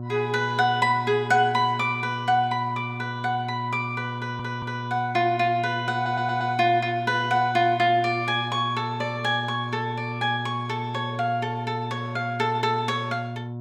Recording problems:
hum; 60 Hz, harmonics up to 960 Hz, SNR 9 dB
stutter; at 4 s and at 6 s

